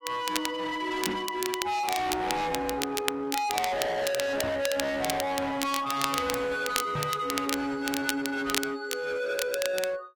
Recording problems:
lossy compression; AAC, log-spectral distance 2 dB, nothing above 15.1 kHz
distortion; hard clipping, signal-to-distortion ratio 6 dB
crackle; vinyl, SNR 5 dB
knock on the microphone; at 1 s, at 4.5 s and at 7 s; peak 0 dB vs average level

